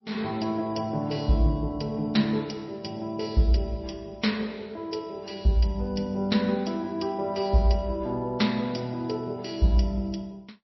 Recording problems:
codec artefacts; MP3, log-spectral distance 3 dB, nothing above 5.7 kHz

